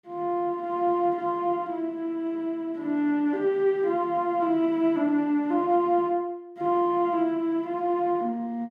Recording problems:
none

